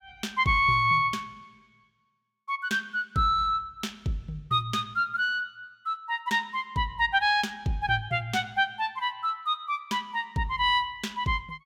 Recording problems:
none

